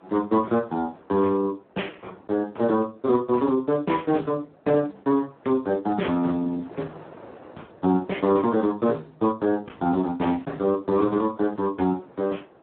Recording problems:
phone line; 170 Hz to 3.3 kHz, Speex
wind noise; below 860 Hz, SNR 25 dB

